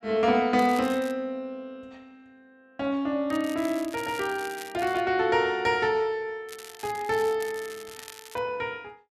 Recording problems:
crackling; at 0.5 s, from 3.5 to 5 s and from 6.5 to 8.5 s; loose cable, SNR 18 dB

